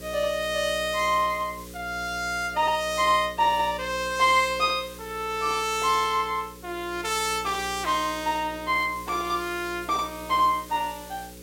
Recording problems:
hum; 60 Hz, harmonics up to 540 Hz, SNR 18 dB
hiss; slope +2 dB per octave, SNR 20 dB

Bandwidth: 16.5 kHz